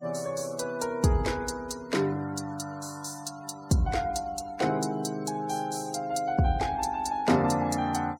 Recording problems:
noise reduction artefacts; signal-to-artefact ratio 21 dB

